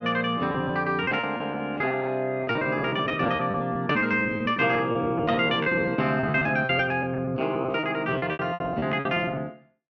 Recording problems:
lost packets; 18% of the sound replaced, filled with repeated pitch periods

